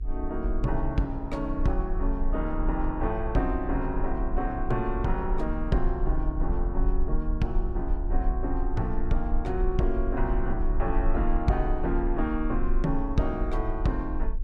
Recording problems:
hum; 60 Hz, harmonics up to 480 Hz, SNR 26 dB
low-frequency rumble; below 44 Hz, strongest tone 24 Hz, SNR 2 dB

